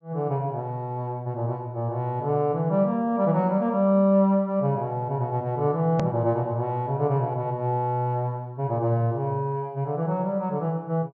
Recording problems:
treble cut off; nothing above 8 kHz
hard cut with a click; at 6 s

